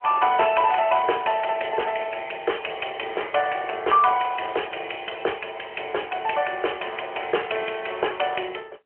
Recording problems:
phone line; 340 Hz to 3.1 kHz, AMR-NB

